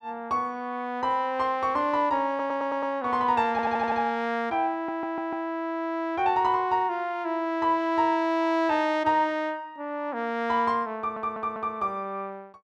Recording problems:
stutter; 4 times, first at 2.5 s

